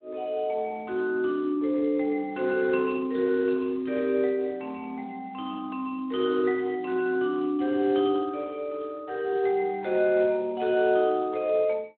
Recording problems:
telephone audio; 280 Hz to 3.5 kHz, Speex

